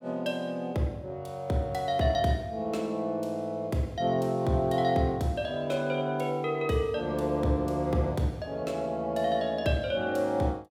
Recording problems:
none

